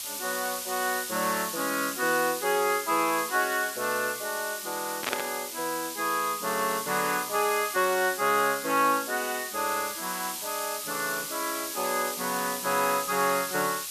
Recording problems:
hiss; slope +4 dB per octave, SNR 5 dB
burst of static; at 5 s; peak +3 dB vs average level

